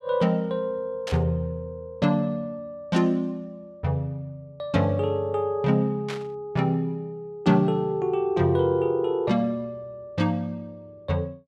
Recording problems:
burst of static; at 1 s and at 6 s; peak -5 dB vs average level

